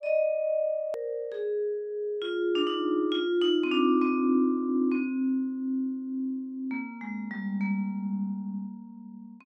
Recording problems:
hard cut with a click; at 1 s

